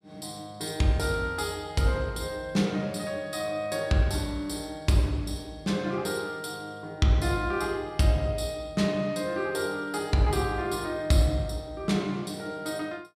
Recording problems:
none

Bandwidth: 15 kHz